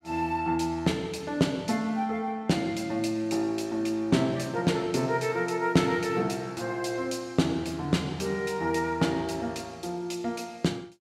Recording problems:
none

